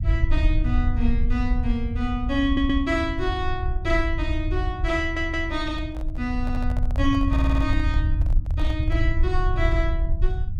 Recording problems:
rumble; below 76 Hz, SNR -1 dB
audio stuttering; 4 times, first at 2.5 s
microphone handling noise; from 5.5 to 9 s; peak -9 dB vs average level

